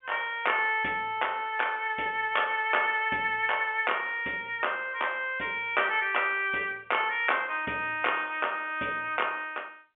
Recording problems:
telephone audio; 260 Hz to 3.3 kHz, G.711

